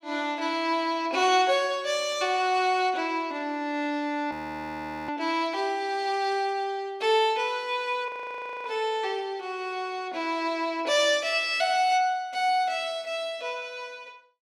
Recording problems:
frozen audio; at 4.5 s for 1 s and at 8 s for 0.5 s

